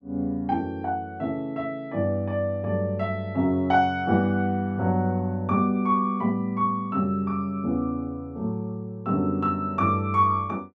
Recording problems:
none

